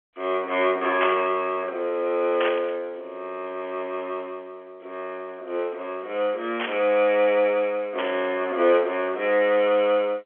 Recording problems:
phone line; 300 Hz to 3.4 kHz, G.711
static burst; 4 times, first at 1 s; peak +1 dB vs average level

